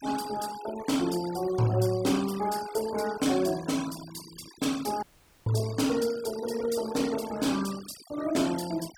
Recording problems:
denoising artefacts; signal-to-artefact ratio 15 dB
audio cutting out; at 5 s

